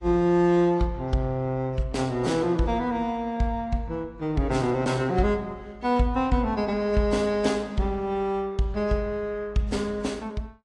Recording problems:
lossy codec; AAC, log-spectral distance 2 dB, nothing above 10.1 kHz

